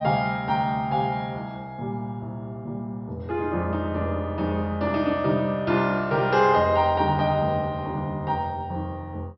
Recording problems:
treble cut off; nothing above 5.7 kHz

